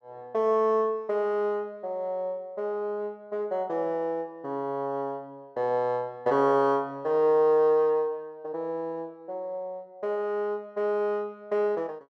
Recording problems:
none

